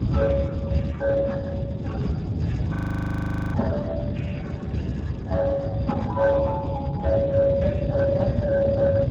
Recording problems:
lossy compression; MP3, then Speex, log-spectral distance 3 dB
low-frequency rumble; below 210 Hz, SNR 2 dB
frozen audio; at 3 s for 1 s

